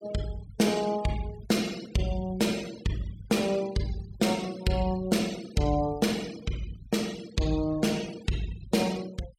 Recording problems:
noise reduction artefacts; signal-to-artefact ratio 17 dB

